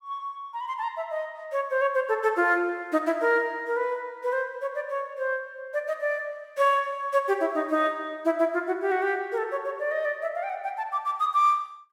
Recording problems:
none

